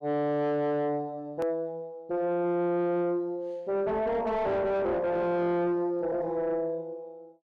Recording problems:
distortion; soft clipping, signal-to-distortion ratio 8 dB
hard cut with a click; at 1.5 s

